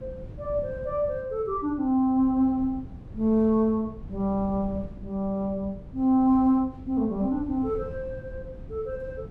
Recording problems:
wind on the microphone; below 160 Hz, SNR 16 dB

